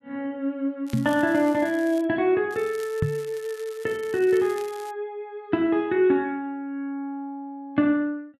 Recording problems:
crackling; from 1 to 2 s and from 2.5 to 5 s; loose cable, SNR 22 dB
microphone bump; at 1 s and at 3 s; peak +4 dB vs average level

